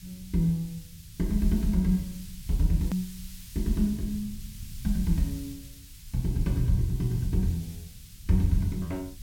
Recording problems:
hiss; SNR 19 dB
low-frequency rumble; below 94 Hz, SNR 18 dB
hard cut with a click; at 3 s

